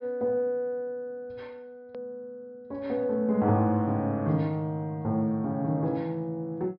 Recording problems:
low-pass filter; nothing above 5.5 kHz
hard cut with a click; at 2 s

